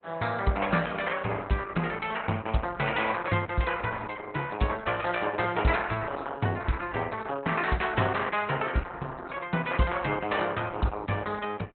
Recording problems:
lossy compression; Opus, log-spectral distance 5 dB, nothing above 3.9 kHz

